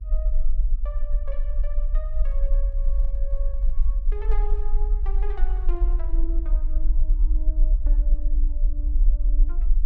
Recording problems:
electrical hum; 50 Hz, harmonics up to 450 Hz, SNR 16 dB
low-frequency rumble; below 40 Hz, strongest tone 18 Hz, SNR -17 dB
handling noise; from 2 to 6 s; peak -12 dB vs average level

